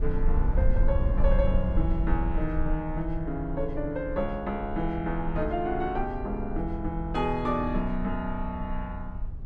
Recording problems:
rumble; below 58 Hz, SNR 2 dB

